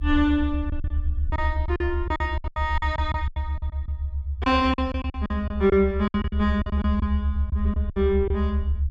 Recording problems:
rumble; below 76 Hz, strongest tone 68 Hz, SNR 2 dB
packet loss; 15% of the sound replaced, filled with silence

